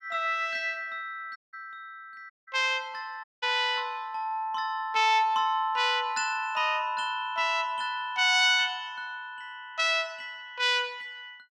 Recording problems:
dropout; at 1.5 s, at 2.5 s and at 3 s

